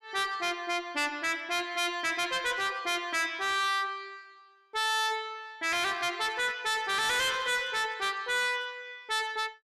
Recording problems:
distorted audio; hard clipping, uneven, signal-to-distortion ratio 6 dB

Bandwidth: 13 kHz